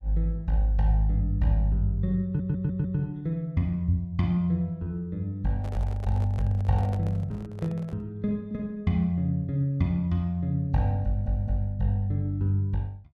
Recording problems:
stutter; at 2.5 s and at 11 s
handling noise; from 5.5 to 8 s; peak -10 dB vs average level

